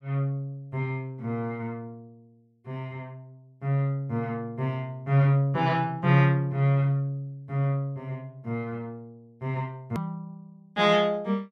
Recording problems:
hard cut with a click; at 10 s

